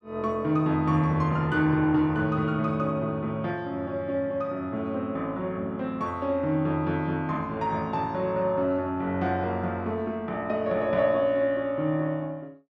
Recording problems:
none

